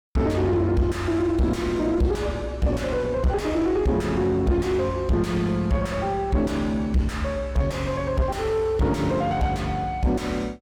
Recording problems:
distortion; soft clipping, signal-to-distortion ratio 6 dB

